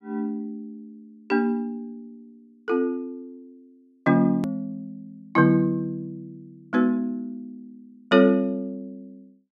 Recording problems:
edit click; at 4.5 s

